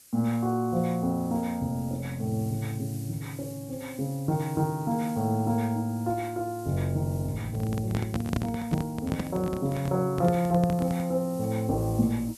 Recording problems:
background hiss; SNR 19 dB
microphone handling noise; from 7.5 to 11 s; peak +3 dB vs average level

